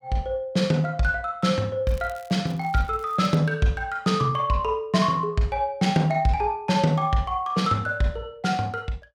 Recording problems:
crackle; from 2 to 3.5 s; loose cable, SNR 28 dB

